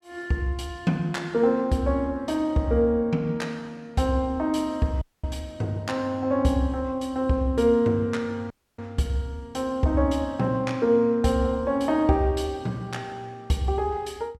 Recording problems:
dropout; at 5 s and at 8.5 s

